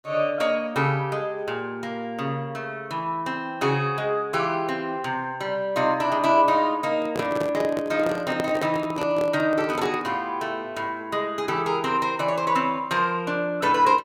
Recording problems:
handling noise; from 7 to 10 s; peak +1 dB vs average level

